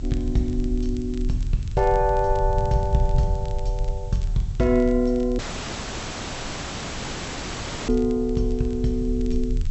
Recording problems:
low-pass filter; nothing above 7.9 kHz
background hiss; slope 0 dB per octave, SNR 28 dB
low-frequency rumble; below 66 Hz, strongest tone 36 Hz, SNR 5 dB
crackling; vinyl, SNR 27 dB
audio cutting out; at 5.5 s for 2.5 s

